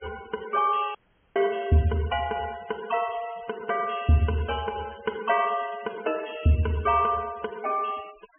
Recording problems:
treble cut off; nothing above 3.3 kHz
denoising artefacts; signal-to-artefact ratio 21 dB
dropout; at 1 s

